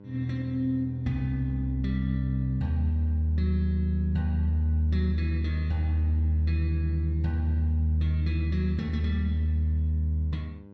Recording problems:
electrical hum; 50 Hz, harmonics up to 1 kHz, SNR 20 dB

